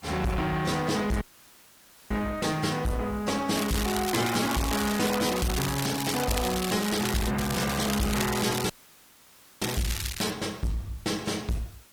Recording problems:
lossy codec; AAC, log-spectral distance 6 dB
distortion; soft clipping, signal-to-distortion ratio 6 dB
background hiss; slope -1 dB per octave, SNR 23 dB
dropout; at 1 s for 1 s and at 8.5 s for 1 s
crackle; from 3.5 to 7.5 s and from 7.5 to 10 s; loose cable, SNR 5 dB

